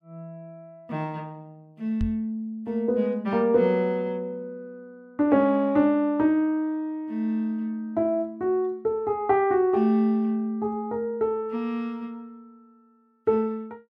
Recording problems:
knock on the microphone; at 2 s; peak -2 dB vs average level

